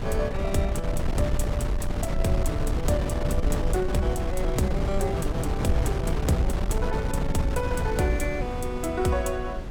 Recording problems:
wind noise; below 150 Hz, SNR 0 dB

